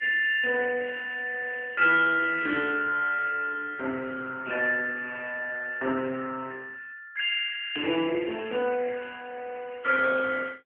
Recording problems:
telephone audio; 220 Hz to 3.8 kHz, AMR-NB

